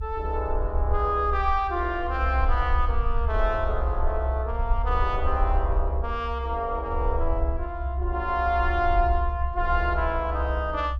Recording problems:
low-frequency rumble; below 66 Hz, SNR 2 dB

